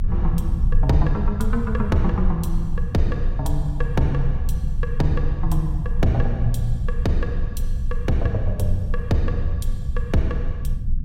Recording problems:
low-frequency rumble; below 62 Hz, strongest tone 22 Hz, SNR 0 dB

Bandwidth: 16 kHz